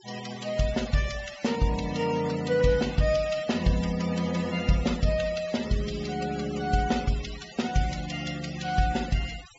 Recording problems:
treble cut off; nothing above 8 kHz
denoising artefacts; signal-to-artefact ratio 14 dB

